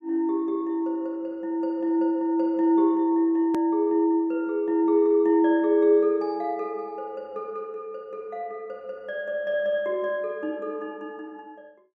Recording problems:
hard cut with a click; at 3.5 s

